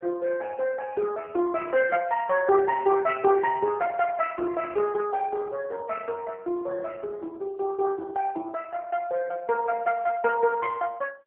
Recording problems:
phone line; 240 Hz to 2.6 kHz, AMR-NB

